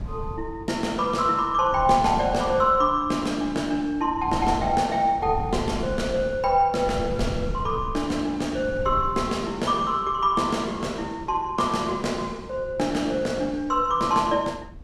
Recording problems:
wind on the microphone; below 150 Hz, SNR 14 dB

